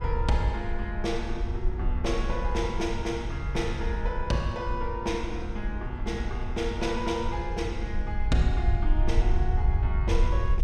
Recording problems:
low-frequency rumble; below 66 Hz, SNR 0 dB
wind noise; below 500 Hz, SNR 17 dB

